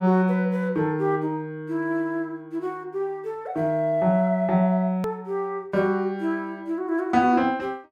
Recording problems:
click at an edit; at 5 s

